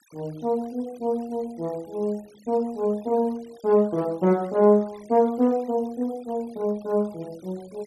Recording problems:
noise reduction artefacts; signal-to-artefact ratio 27 dB

